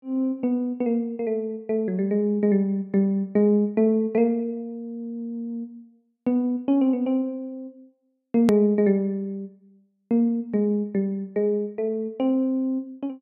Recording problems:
click at an edit; at 8.5 s

